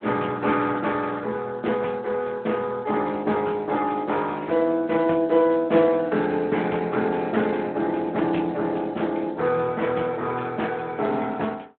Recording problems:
phone line; 260 Hz to 3 kHz, Speex

